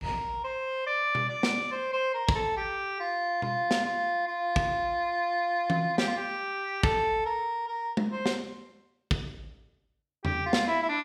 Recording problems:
none

